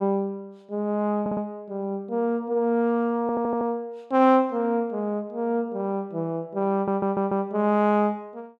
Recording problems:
audio stuttering; at 1 s, at 3 s and at 6.5 s

